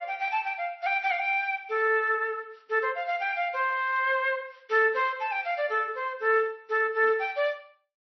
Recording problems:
codec artefacts; MP3, log-spectral distance 2 dB, nothing above 5.8 kHz

